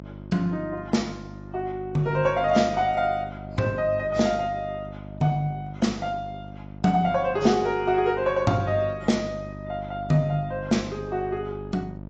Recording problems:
lossy codec; AAC, log-spectral distance 2 dB, nothing above 7.3 kHz
hum; 50 Hz, harmonics up to 950 Hz, SNR 14 dB

